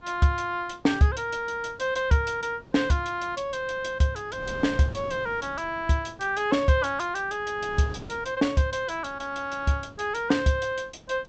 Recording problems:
treble missing; nothing above 8 kHz
wind noise; below 480 Hz, SNR 20 dB

